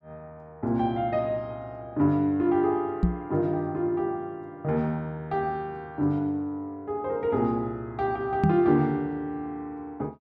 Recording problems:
microphone bump; at 3 s and at 8.5 s; peak +8 dB vs average level

